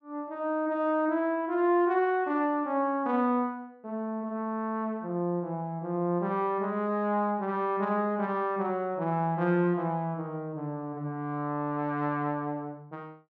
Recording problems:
none

